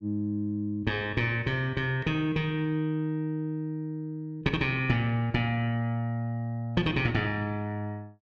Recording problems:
none

